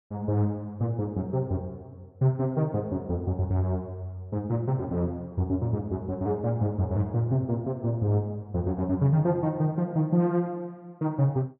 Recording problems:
none

